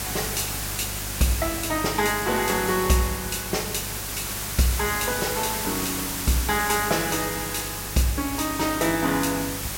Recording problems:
hum; 50 Hz, harmonics up to 750 Hz, SNR 14 dB
background hiss; slope -1 dB per octave, SNR 3 dB

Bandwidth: 16.5 kHz